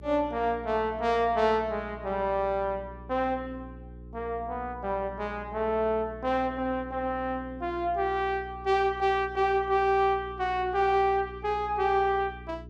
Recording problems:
electrical hum; 60 Hz, harmonics up to 420 Hz, SNR 17 dB

